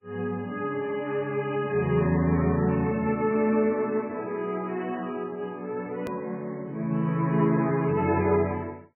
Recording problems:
lossy compression; MP3, log-spectral distance 2 dB, nothing above 2.6 kHz
hard cut with a click; at 6 s

